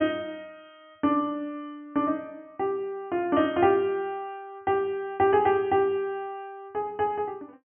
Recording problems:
treble missing; nothing above 3.2 kHz

